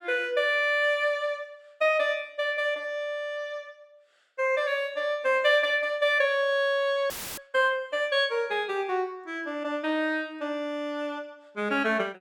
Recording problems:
dropout; at 7 s; filled with static

